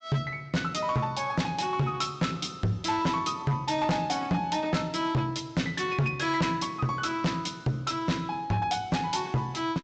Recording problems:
treble cut off; nothing above 8 kHz
distorted audio; hard clipping, signal-to-distortion ratio 6 dB

